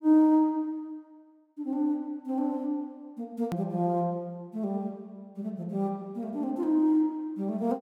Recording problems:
click at an edit; at 3.5 s

